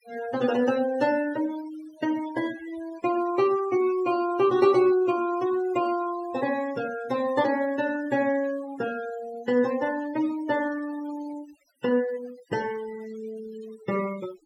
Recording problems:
noise reduction artefacts; signal-to-artefact ratio 17 dB

